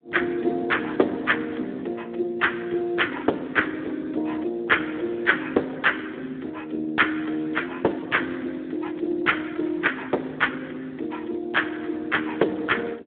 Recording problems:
phone line; 280 Hz to 3.4 kHz, Speex

